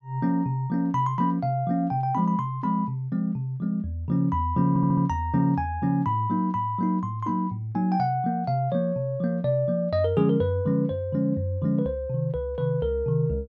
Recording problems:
audio stuttering; at 4.5 s

